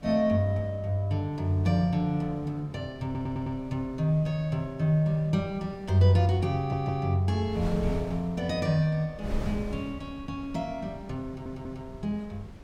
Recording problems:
wind on the microphone; below 180 Hz, SNR 14 dB
stutter; at 3 s, at 6.5 s and at 11 s

